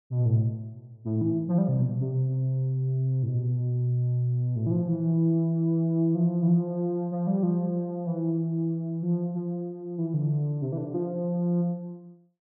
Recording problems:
none

